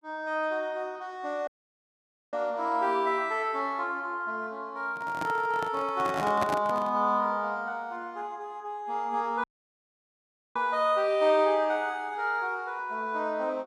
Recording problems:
dropout; at 1.5 s for 1 s and at 9.5 s for 1 s
microphone handling noise; from 5 to 7 s; peak +1 dB vs average level

